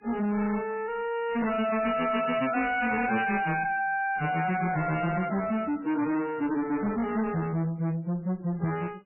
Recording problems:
lossy compression; AAC, then MP3, log-spectral distance 4 dB, nothing above 2.4 kHz
distortion; soft clipping, signal-to-distortion ratio 5 dB

